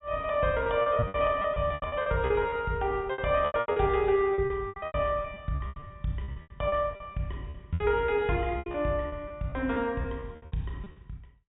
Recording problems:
treble cut off; nothing above 4 kHz
packet loss; 18% of the sound replaced, filled with repeated pitch periods

